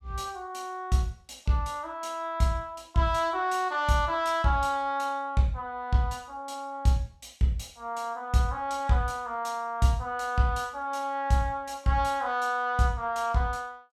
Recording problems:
none

